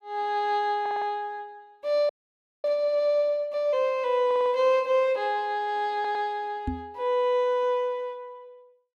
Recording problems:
audio stuttering; at 1 s, at 4.5 s and at 6 s
frozen audio; at 2 s for 0.5 s
microphone thump; at 6.5 s; peak -1 dB vs average level

